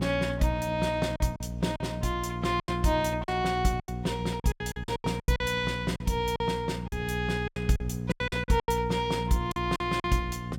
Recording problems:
hum; 60 Hz, harmonics up to 540 Hz, SNR 6 dB
packet loss; 13% of the sound replaced, filled with silence

